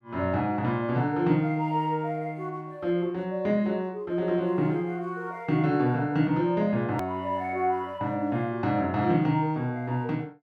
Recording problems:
hard cut with a click; at 7 s

